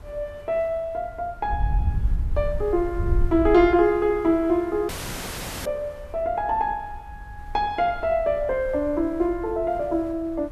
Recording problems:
hiss; SNR 27 dB
wind on the microphone; below 70 Hz, SNR 7 dB
dropout; at 5 s for 1 s

